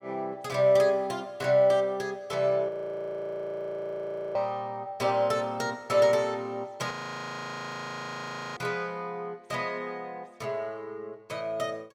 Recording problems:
frozen audio; at 2.5 s for 1.5 s and at 7 s for 1.5 s

